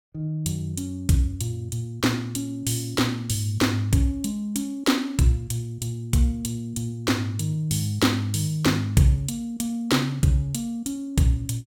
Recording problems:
none

